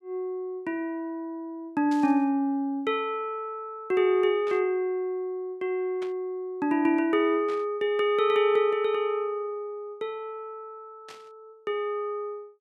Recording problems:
burst of static; 5 times, first at 2 s; peak -12 dB vs average level

